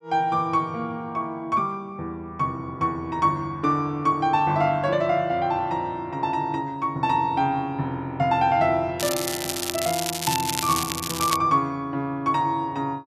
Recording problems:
crackling; from 9 to 11 s; loose cable, SNR 4 dB

